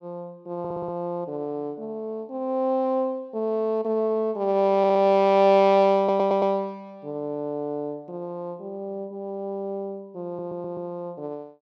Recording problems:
stutter; 4 times, first at 0.5 s

